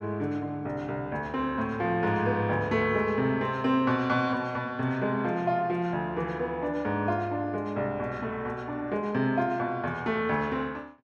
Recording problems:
none

